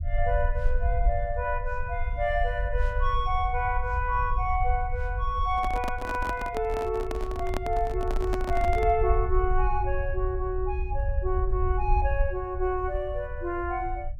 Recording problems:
rumble; below 62 Hz, SNR 3 dB
handling noise; from 5.5 to 9 s; peak 0 dB vs average level

